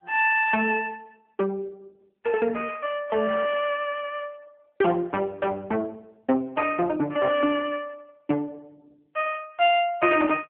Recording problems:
phone line; 240 Hz to 3.3 kHz, AMR-NB

